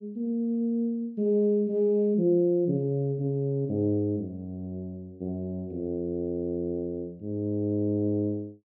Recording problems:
none

